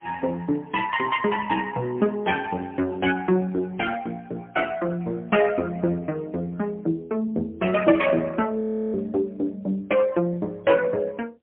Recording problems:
telephone audio; 190 Hz to 3.1 kHz, AMR-NB, then MP3
audio freezing; at 8.5 s

